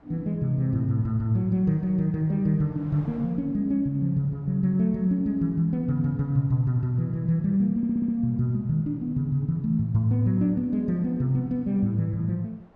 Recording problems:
wind on the microphone; below 920 Hz, SNR 31 dB
stutter; at 8 s

